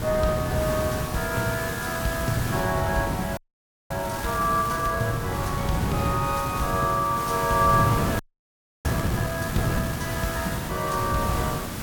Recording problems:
background hiss; SNR 7 dB
wind noise; below 330 Hz, SNR 5 dB
audio freezing; at 3.5 s for 0.5 s and at 8 s for 0.5 s

